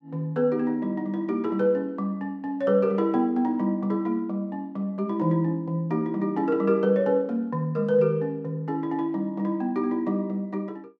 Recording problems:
none

